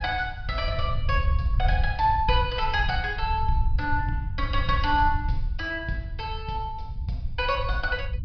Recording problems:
treble cut off; nothing above 5.5 kHz
low-frequency rumble; below 80 Hz, SNR 3 dB

